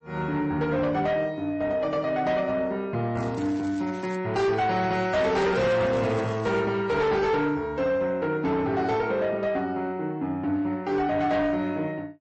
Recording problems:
codec artefacts; MP3, then MP3, log-spectral distance 2 dB
distorted audio; soft clipping, signal-to-distortion ratio 11 dB
crackle; at 3 s and from 5 to 6.5 s; loose cable, SNR 24 dB

